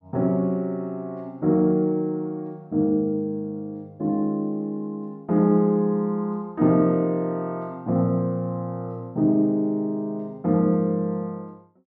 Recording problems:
none

